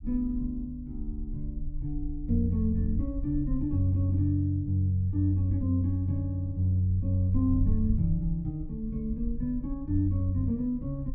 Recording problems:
low-frequency rumble; below 58 Hz, SNR 10 dB

